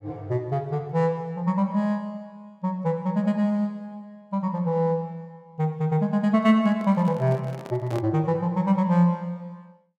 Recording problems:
microphone handling noise; from 6.5 to 8 s; peak -8 dB vs average level

